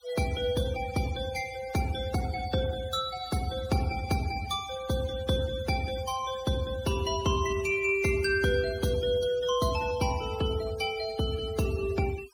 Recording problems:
noise reduction artefacts; signal-to-artefact ratio 16 dB

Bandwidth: 16.5 kHz